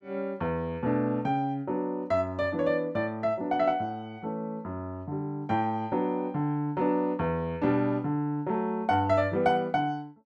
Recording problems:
none

